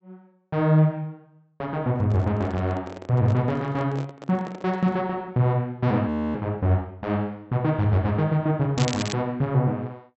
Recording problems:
treble missing; nothing above 7.8 kHz
handling noise; from 2 to 5 s; peak -8 dB vs average level
audio freezing; at 6 s
crackle; at 9 s; loose cable, SNR 9 dB

